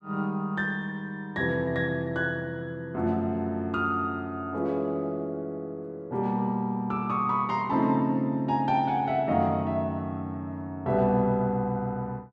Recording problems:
none

